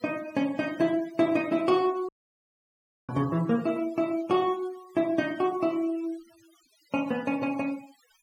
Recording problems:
noise reduction artefacts; signal-to-artefact ratio 22 dB
audio cutting out; at 2 s for 1 s

